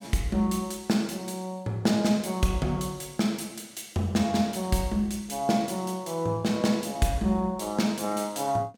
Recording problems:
none

